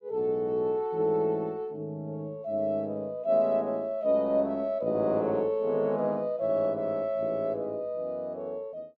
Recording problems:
none

